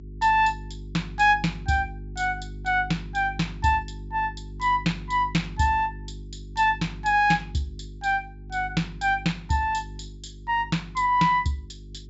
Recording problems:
low-pass filter; nothing above 7.4 kHz
hum; 50 Hz, harmonics up to 400 Hz, SNR 15 dB

